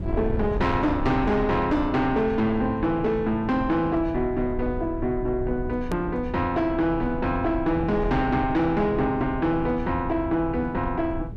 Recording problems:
distortion; soft clipping, signal-to-distortion ratio 10 dB
low-frequency rumble; below 120 Hz, SNR 10 dB
hard cut with a click; at 6 s

